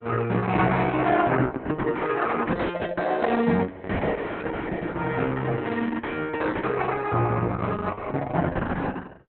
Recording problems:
codec artefacts; Opus, log-spectral distance 5 dB, nothing above 3.8 kHz

